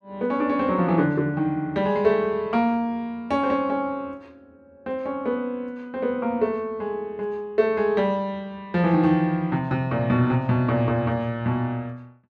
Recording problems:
none

